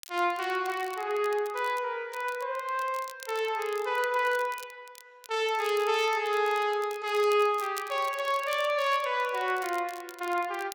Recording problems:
crackling; vinyl, SNR 19 dB

